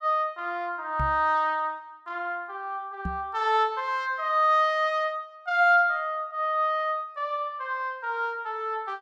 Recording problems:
knock on the microphone; at 1 s and at 3 s; peak -2 dB vs average level

